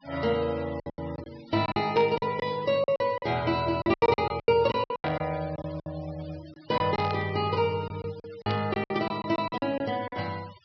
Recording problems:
treble cut off; nothing above 5.5 kHz
noise reduction artefacts; signal-to-artefact ratio 20 dB
lost packets; 14% of the sound replaced, filled with silence
burst of static; 4 times, first at 2 s; peak -5 dB vs average level

